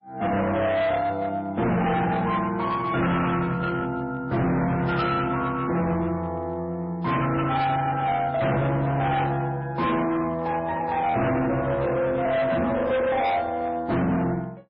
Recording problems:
codec artefacts; MP3, log-spectral distance 2 dB, nothing above 5.3 kHz
distorted audio; hard clipping, uneven, signal-to-distortion ratio 7 dB

